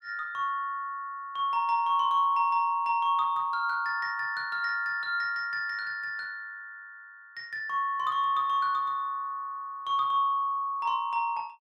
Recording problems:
none

